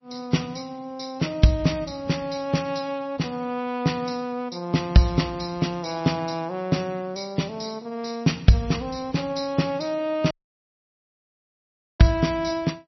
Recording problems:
lossy compression; MP3, log-spectral distance 4 dB, nothing above 5.8 kHz
audio cutting out; at 10 s for 1.5 s

